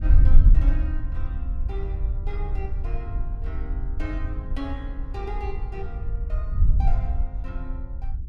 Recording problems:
wind noise; below 58 Hz, SNR -12 dB

